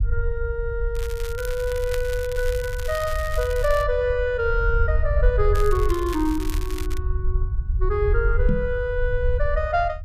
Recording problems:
low-frequency rumble; below 64 Hz, SNR 2 dB
crackle; from 1 to 4 s and from 5.5 to 7 s; loose cable, SNR 14 dB
microphone thump; at 8.5 s; peak +4 dB vs average level

